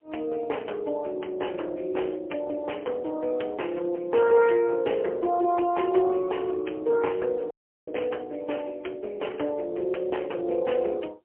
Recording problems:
phone line; 300 Hz to 3.2 kHz, AMR-NB, then MP3
audio cutting out; at 7.5 s

